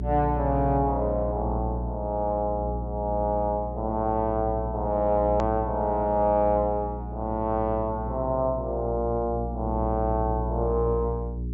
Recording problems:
treble missing; nothing above 8 kHz
hum; 60 Hz, harmonics up to 420 Hz, SNR 6 dB
click at an edit; at 5.5 s

